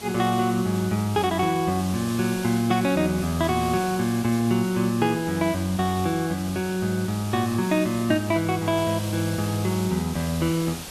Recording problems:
hiss; SNR 13 dB

